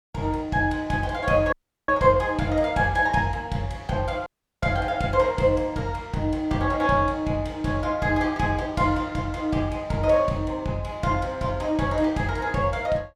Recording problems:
dropout; at 1.5 s and at 4.5 s

